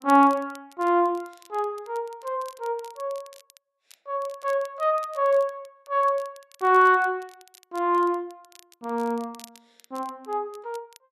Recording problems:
crackle; vinyl, SNR 27 dB

